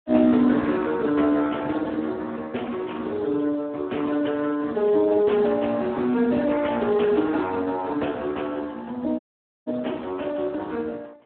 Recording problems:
telephone audio; 220 Hz to 3.3 kHz, Speex
dropout; at 9 s

